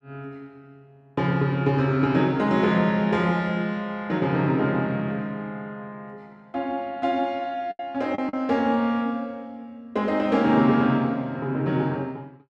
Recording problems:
packet loss; 1.3% of the sound replaced, filled with the last packet

